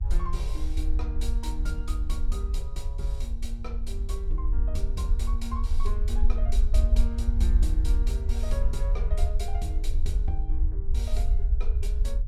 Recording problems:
electrical hum; 60 Hz, harmonics up to 1.3 kHz, SNR 26 dB
rumble; below 56 Hz, SNR -10 dB

